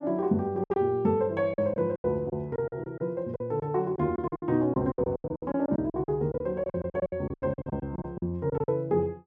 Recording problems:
packet loss; 17% of the sound replaced, filled with silence

